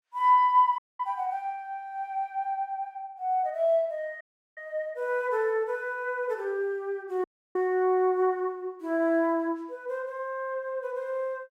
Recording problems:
audio cutting out; at 1 s, at 4 s and at 7 s

